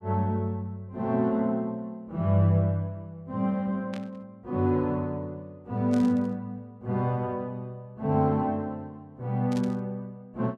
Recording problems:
burst of static; at 4 s, at 6 s and at 9.5 s; peak -11 dB vs average level

